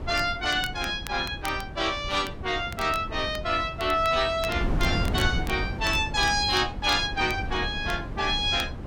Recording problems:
wind on the microphone; below 230 Hz, SNR 9 dB
crackle; vinyl, SNR 18 dB

